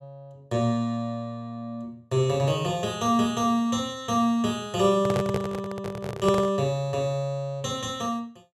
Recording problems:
microphone handling noise; from 5 to 6.5 s; peak +2 dB vs average level

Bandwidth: 13.5 kHz